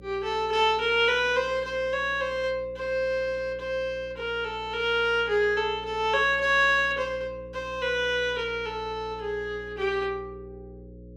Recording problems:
hum; 60 Hz, harmonics up to 540 Hz, SNR 21 dB

